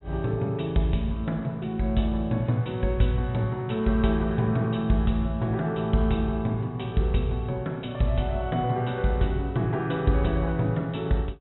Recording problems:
treble cut off; nothing above 3.9 kHz

